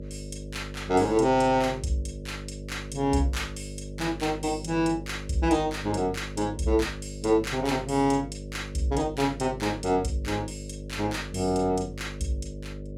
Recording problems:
electrical hum; 50 Hz, harmonics up to 600 Hz, SNR 11 dB

